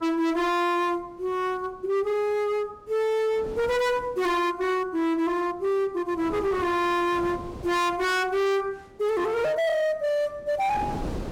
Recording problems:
distortion; hard clipping, signal-to-distortion ratio 6 dB
wind noise; below 540 Hz, SNR 14 dB

